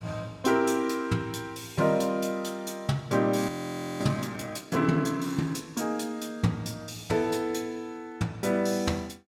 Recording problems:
audio freezing; at 3.5 s for 0.5 s

